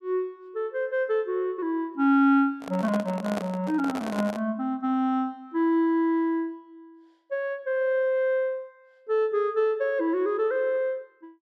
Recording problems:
handling noise; from 2.5 to 4.5 s; peak -3 dB vs average level

